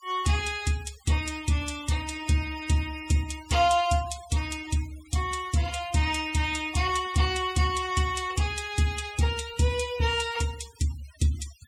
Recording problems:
noise reduction artefacts; signal-to-artefact ratio 17 dB

